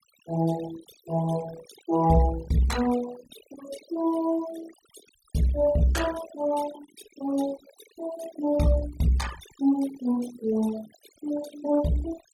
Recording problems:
denoising artefacts; signal-to-artefact ratio 14 dB

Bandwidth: 17.5 kHz